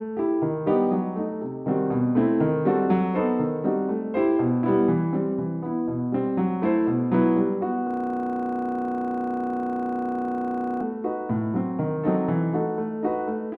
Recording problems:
frozen audio; at 8 s for 3 s

